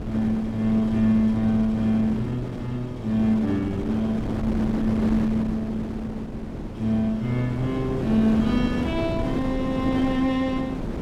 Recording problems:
wind on the microphone; below 380 Hz, SNR 6 dB

